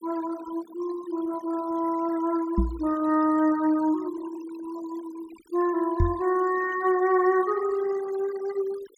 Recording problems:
denoising artefacts; signal-to-artefact ratio 20 dB
microphone thump; at 2.5 s and at 6 s; peak +5 dB vs average level

